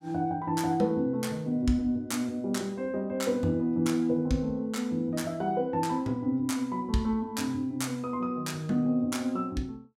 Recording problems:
none

